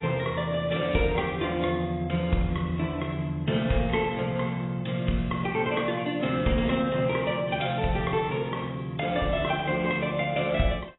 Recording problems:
codec artefacts; AAC, log-spectral distance 5 dB, nothing above 3.8 kHz

